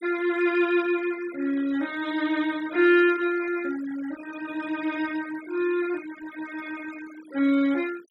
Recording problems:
denoising artefacts; signal-to-artefact ratio 18 dB

